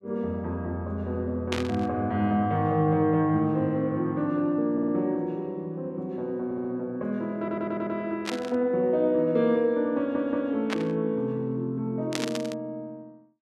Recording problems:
burst of static; 4 times, first at 1.5 s; peak +1 dB vs average level
audio stuttering; 4 times, first at 4.5 s

